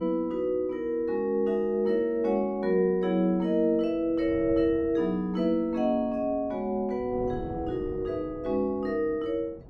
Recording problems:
wind on the microphone; below 340 Hz, SNR 19 dB

